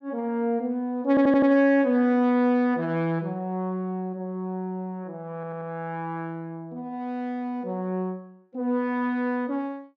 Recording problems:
stutter; at 1 s and at 5.5 s

